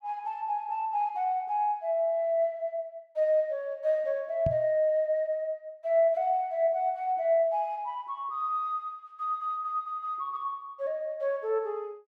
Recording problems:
microphone bump; at 4.5 s; peak +1 dB vs average level

